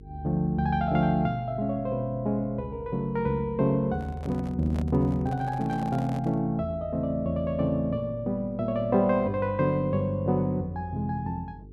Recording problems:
hum; 50 Hz, harmonics up to 450 Hz, SNR 20 dB
handling noise; from 4 to 6.5 s; peak -9 dB vs average level

